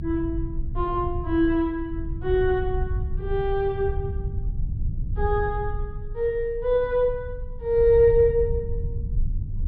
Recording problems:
treble missing; nothing above 5.5 kHz
low-frequency rumble; below 88 Hz, SNR 7 dB

